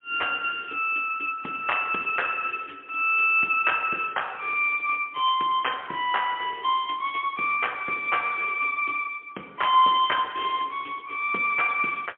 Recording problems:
phone line; 240 Hz to 3.3 kHz, AMR-NB, then MP3

